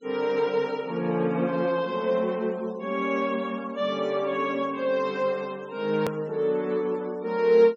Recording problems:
treble cut off; nothing above 8 kHz
denoising artefacts; signal-to-artefact ratio 26 dB
edit click; at 6 s

